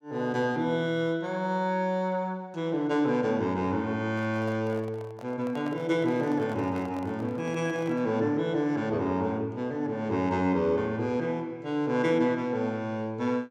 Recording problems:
handling noise; from 4 to 8 s; peak -9 dB vs average level

